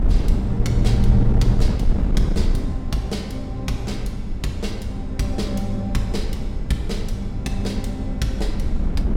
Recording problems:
wind noise; below 96 Hz, SNR -1 dB

